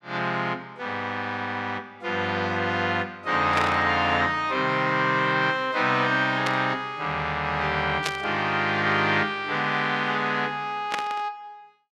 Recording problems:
burst of static; 4 times, first at 3.5 s; peak +2 dB vs average level

